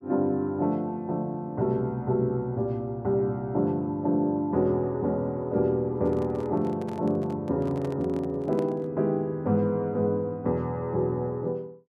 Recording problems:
handling noise; from 6 to 9 s; peak -9 dB vs average level

